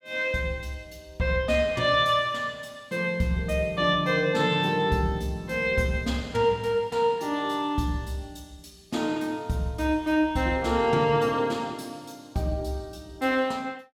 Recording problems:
none

